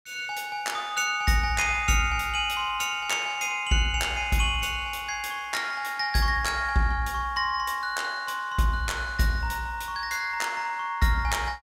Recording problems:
none

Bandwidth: 16 kHz